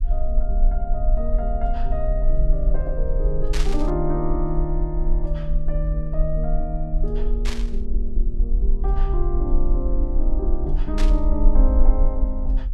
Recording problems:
low-frequency rumble; below 42 Hz, strongest tone 22 Hz, SNR -5 dB
burst of static; at 3.5 s, at 7.5 s and at 11 s; peak +2 dB vs average level

